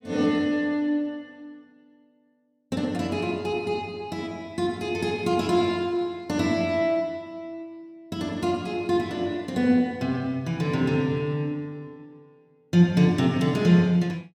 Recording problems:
none

